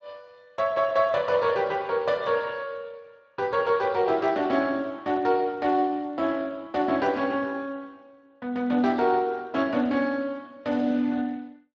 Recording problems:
lossy codec; Speex, log-spectral distance 3 dB

